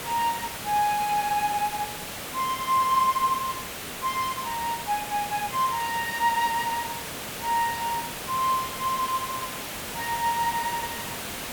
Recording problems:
background hiss; slope -2 dB per octave, SNR 6 dB

